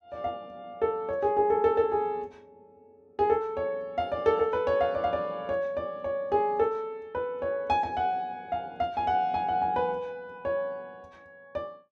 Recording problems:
none

